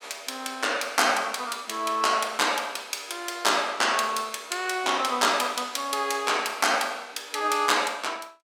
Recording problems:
none

